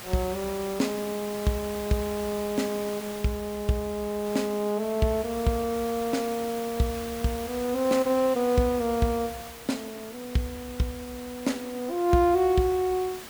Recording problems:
background hiss; slope -2 dB per octave, SNR 13 dB

